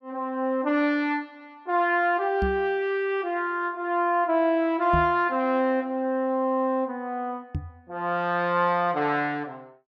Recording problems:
microphone thump; at 2.5 s, at 5 s and at 7.5 s; peak 0 dB vs average level

